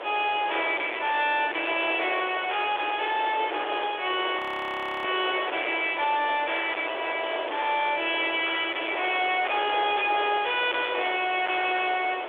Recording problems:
telephone audio; 300 Hz to 3.6 kHz, G.726
distorted audio; hard clipping, uneven, signal-to-distortion ratio 6 dB
background hiss; SNR 9 dB
audio freezing; at 4.5 s for 0.5 s

